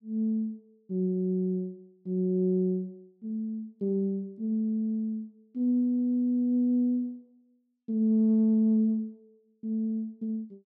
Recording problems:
none

